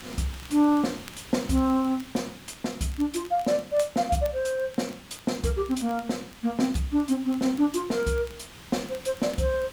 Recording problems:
background hiss; SNR 18 dB
crackling; vinyl, SNR 25 dB

